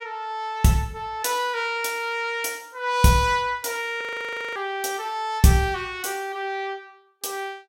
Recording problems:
frozen audio; at 4 s for 0.5 s

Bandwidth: 16.5 kHz